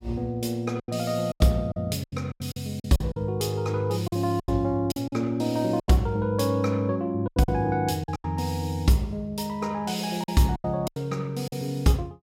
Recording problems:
lost packets; 11% of the sound replaced, filled with silence

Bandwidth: 16 kHz